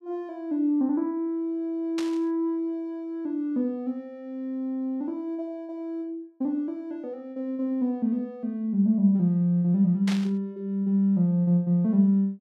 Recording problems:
static burst; at 2 s and at 10 s; peak -4 dB vs average level

